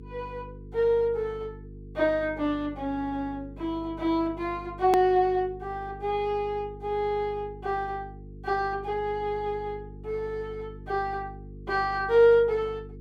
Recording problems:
hum; 50 Hz, harmonics up to 450 Hz, SNR 17 dB
edit click; at 5 s

